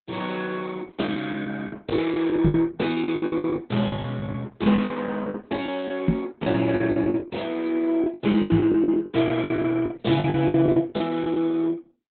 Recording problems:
codec artefacts; Opus, log-spectral distance 4 dB, nothing above 3.9 kHz
lost packets; 17% of the sound replaced, filled with the last packet
microphone bump; at 2.5 s, at 6 s and at 8.5 s; peak +7 dB vs average level

